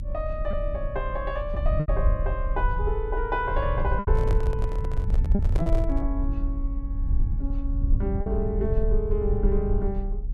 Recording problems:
electrical hum; 60 Hz, harmonics up to 540 Hz, SNR 17 dB
rumble; below 68 Hz, strongest tone 34 Hz, SNR -3 dB
packet loss; 3% of the sound replaced, filled with repeated pitch periods
handling noise; from 4 to 6 s; peak 0 dB vs average level

